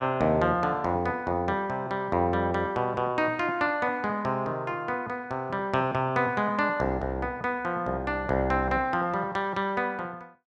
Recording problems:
none

